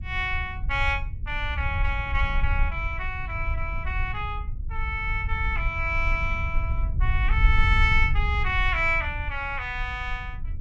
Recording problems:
low-frequency rumble; below 70 Hz, SNR 2 dB

